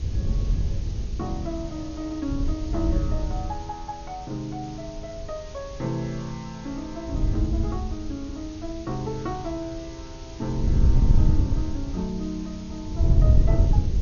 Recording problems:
lossy compression; MP2, log-spectral distance 6 dB
hiss; SNR 15 dB
wind noise; below 98 Hz, SNR -7 dB

